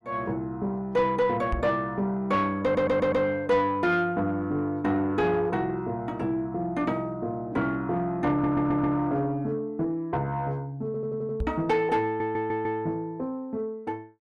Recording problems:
distortion; soft clipping, signal-to-distortion ratio 11 dB
microphone thump; at 1.5 s and at 11 s; peak +1 dB vs average level
audio stuttering; 4 times, first at 2.5 s

